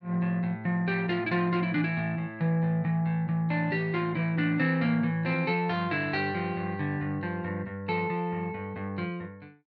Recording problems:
none

